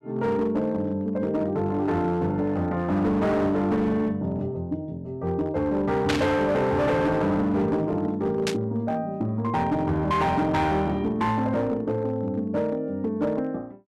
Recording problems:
distorted audio; hard clipping, signal-to-distortion ratio 11 dB
static burst; at 6 s and at 8.5 s; peak +3 dB vs average level

